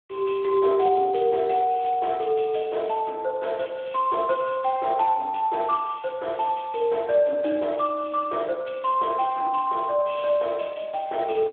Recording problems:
phone line; 260 Hz to 3.7 kHz, Speex

